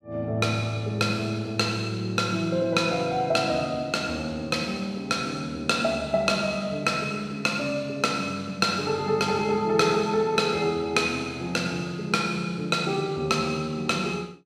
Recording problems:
none

